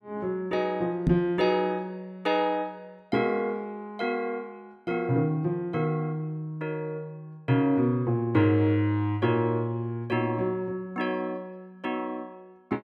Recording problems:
microphone bump; at 1 s; peak +8 dB vs average level

